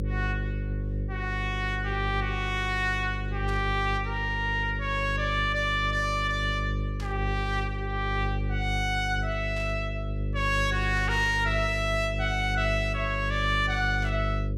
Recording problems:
hum; 50 Hz, harmonics up to 550 Hz, SNR 3 dB
static burst; 5 times, first at 3.5 s; peak -11 dB vs average level

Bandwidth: 16 kHz